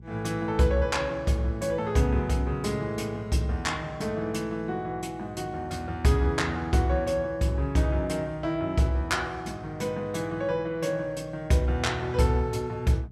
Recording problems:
hum; 60 Hz, harmonics up to 480 Hz, SNR 19 dB

